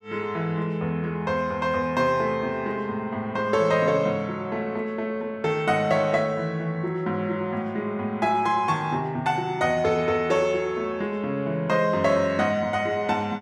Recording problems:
none

